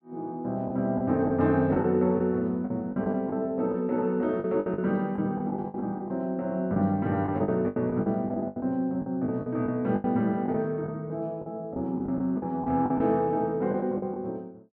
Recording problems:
lost packets; 11% of the sound replaced, filled with the last packet

